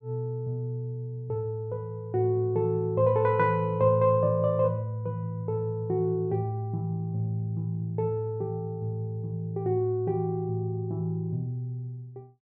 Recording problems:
none

